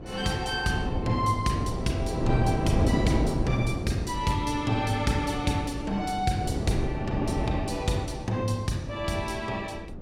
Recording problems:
wind on the microphone; below 340 Hz, SNR 2 dB

